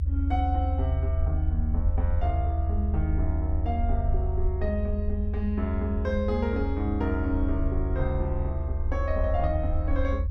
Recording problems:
low-frequency rumble; below 78 Hz, SNR -3 dB

